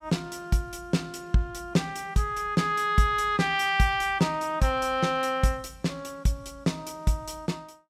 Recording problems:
none

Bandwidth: 16 kHz